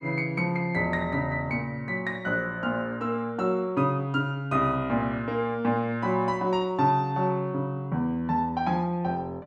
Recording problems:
none

